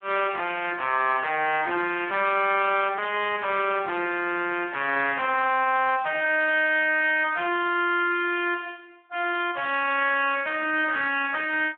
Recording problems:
phone line; 300 Hz to 3.3 kHz, Speex

